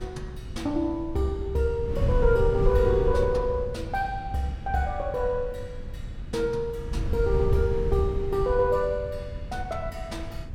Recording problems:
wind noise; below 98 Hz, SNR 5 dB

